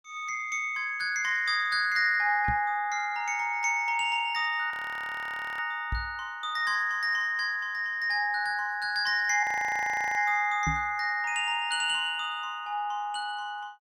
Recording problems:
microphone thump; at 2.5 s, at 6 s and at 11 s; peak -1 dB vs average level
frozen audio; at 4.5 s for 1 s and at 9.5 s for 0.5 s

